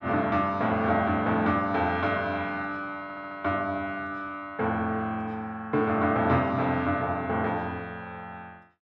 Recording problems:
audio stuttering; at 3 s

